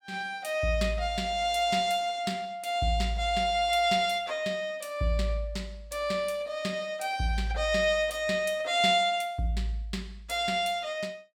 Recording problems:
none

